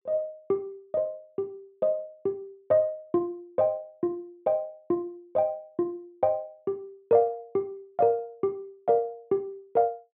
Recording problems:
treble cut off; nothing above 4 kHz

